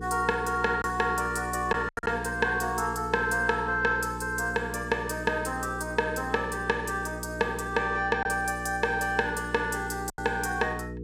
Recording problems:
electrical hum; 60 Hz, harmonics up to 480 Hz, SNR 11 dB
lost packets; 2% of the sound replaced, filled with silence

